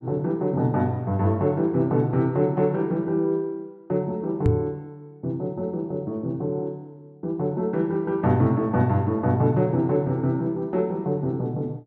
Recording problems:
microphone bump; at 4.5 s; peak +6 dB vs average level

